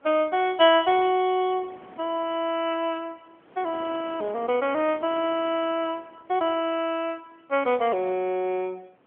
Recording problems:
telephone audio; 260 Hz to 3.4 kHz, AMR-NB
wind on the microphone; below 1.1 kHz, SNR 23 dB

